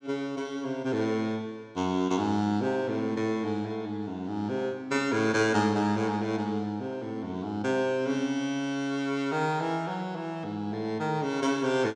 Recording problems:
none

